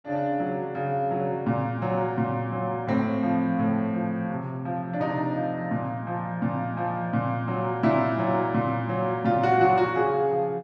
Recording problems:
none

